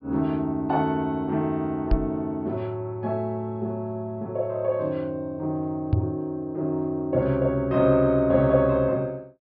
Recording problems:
treble cut off; nothing above 5.5 kHz
knock on the microphone; at 2 s and at 6 s; peak +7 dB vs average level

